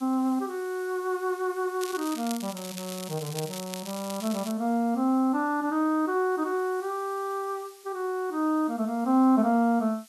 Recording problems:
background hiss; slope +4 dB per octave, SNR 23 dB
crackle; from 2 to 4.5 s; loose cable, SNR 12 dB

